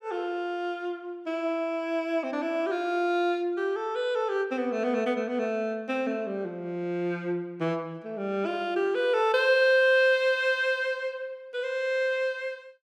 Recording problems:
none

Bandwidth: 15 kHz